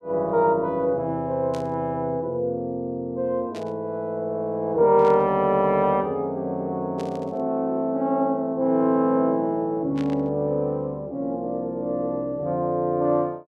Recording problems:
static burst; 5 times, first at 1.5 s; peak -13 dB vs average level

